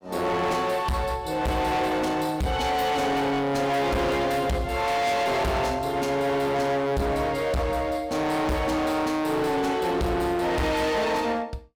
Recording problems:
distortion; hard clipping, uneven, signal-to-distortion ratio 6 dB

